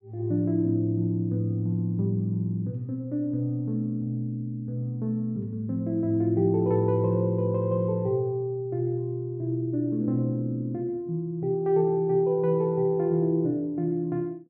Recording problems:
none

